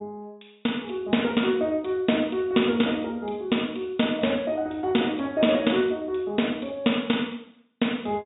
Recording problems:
low-pass filter; nothing above 4 kHz

